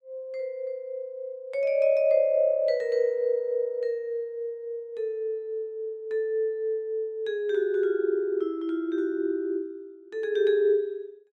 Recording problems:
none

